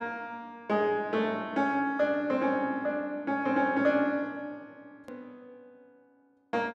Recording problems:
hard cut with a click; at 5 s

